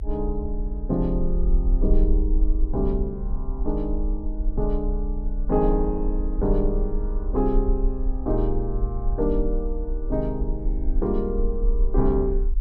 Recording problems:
low-frequency rumble; below 42 Hz, strongest tone 32 Hz, SNR 0 dB

